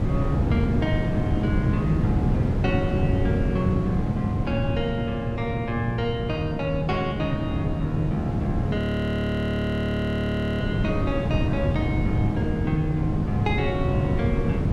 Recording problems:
wind on the microphone; below 240 Hz, SNR -2 dB
audio freezing; at 9 s for 2 s

